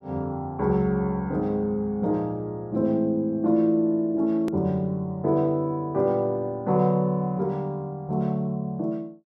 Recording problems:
click at an edit; at 4.5 s

